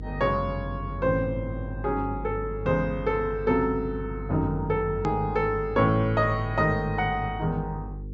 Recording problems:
low-pass filter; nothing above 8 kHz
mains hum; 50 Hz, harmonics up to 500 Hz, SNR 10 dB
edit click; at 5 s

